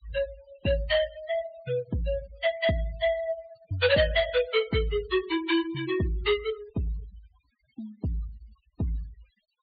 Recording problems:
low-pass filter; nothing above 4.7 kHz
noise reduction artefacts; signal-to-artefact ratio 15 dB

